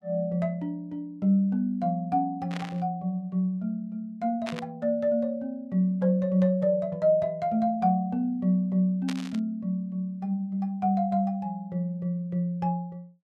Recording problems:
static burst; at 2.5 s, at 4.5 s and at 9 s; peak -5 dB vs average level

